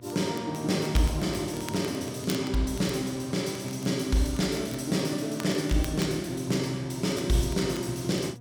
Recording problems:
electrical hum; 60 Hz, harmonics up to 960 Hz, SNR 20 dB
crackle; vinyl, SNR 18 dB

